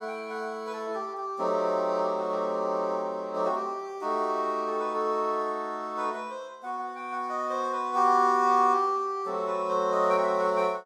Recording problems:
none

